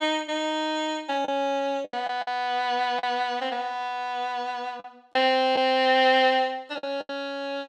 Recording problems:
packet loss; 6% of the sound replaced, filled with the last packet

